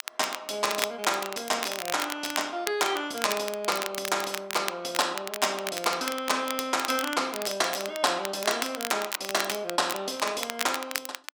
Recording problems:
crackle; vinyl, SNR 6 dB

